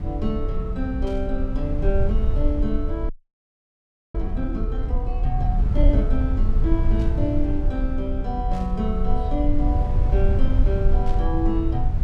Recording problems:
hum; 60 Hz, harmonics up to 720 Hz, SNR 28 dB
rumble; below 66 Hz, SNR -4 dB
burst of static; 4 times, first at 1 s; peak -13 dB vs average level
audio freezing; at 3 s for 1 s

